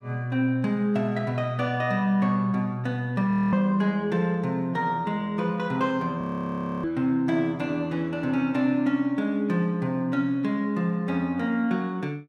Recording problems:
frozen audio; at 3.5 s and at 6 s for 0.5 s

